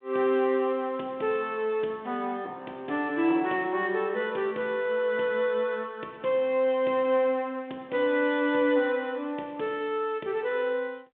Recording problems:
telephone audio; 260 Hz to 3.6 kHz, G.726

